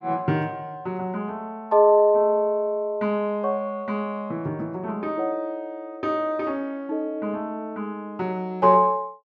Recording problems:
none

